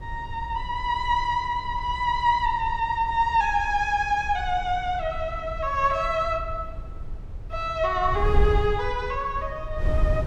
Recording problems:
wind on the microphone; below 72 Hz, SNR 9 dB

